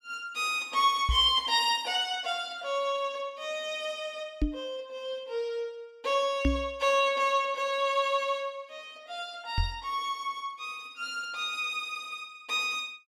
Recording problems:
microphone bump; 4 times, first at 1 s; peak +6 dB vs average level

